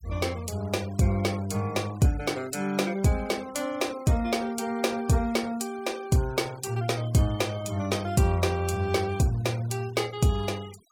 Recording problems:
noise reduction artefacts; signal-to-artefact ratio 21 dB

